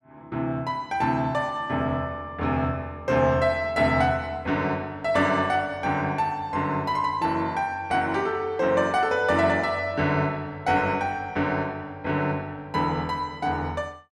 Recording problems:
none

